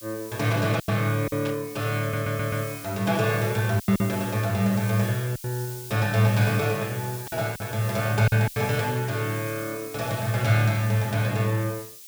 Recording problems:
hiss; slope +8 dB per octave, SNR 13 dB
lost packets; 5% of the sound replaced, filled with silence
static burst; at 1.5 s; peak -8 dB vs average level
stutter; at 2 s

